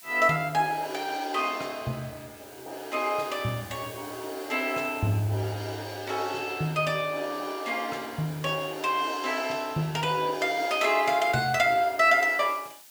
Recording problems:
hiss; slope +2 dB per octave, SNR 20 dB

